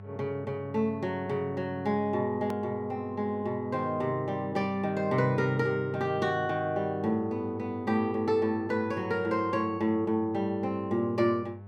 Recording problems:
hum; 50 Hz, harmonics up to 1.3 kHz, SNR 15 dB
click at an edit; at 2.5 s

